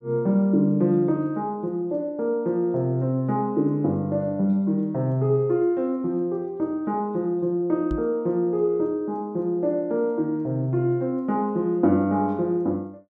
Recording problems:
microphone bump; at 8 s; peak -4 dB vs average level

